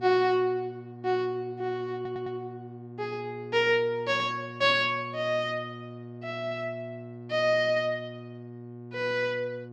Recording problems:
hum; 60 Hz, harmonics up to 1.1 kHz, SNR 14 dB
audio stuttering; at 2 s

